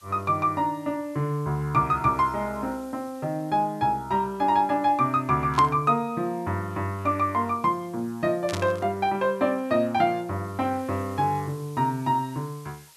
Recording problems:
background hiss; slope +2 dB per octave, SNR 27 dB
burst of static; at 5.5 s and at 8.5 s; peak -2 dB vs average level

